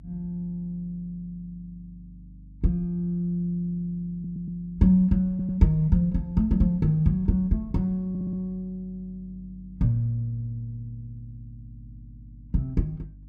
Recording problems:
mains hum; 50 Hz, harmonics up to 300 Hz, SNR 22 dB
stutter; at 4 s, at 5.5 s and at 8 s

